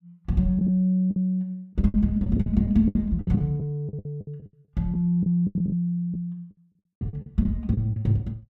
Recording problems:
packet loss; 14% of the sound replaced, filled with the last packet

